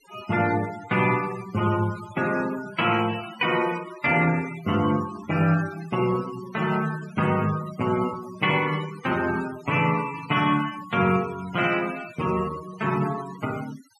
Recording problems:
noise reduction artefacts; signal-to-artefact ratio 15 dB

